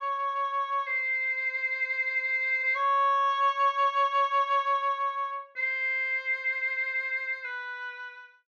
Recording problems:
none

